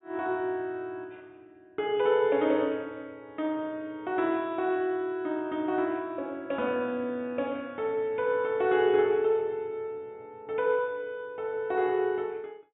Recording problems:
treble missing; nothing above 4 kHz

